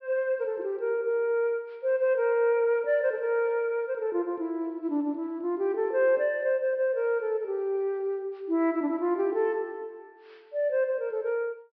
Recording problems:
low-pass filter; nothing above 5.5 kHz

